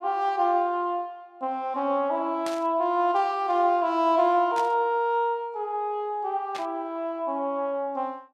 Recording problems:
static burst; at 2.5 s, at 4.5 s and at 6.5 s; peak -7 dB vs average level

